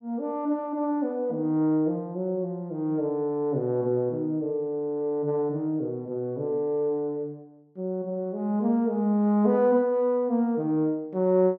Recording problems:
none

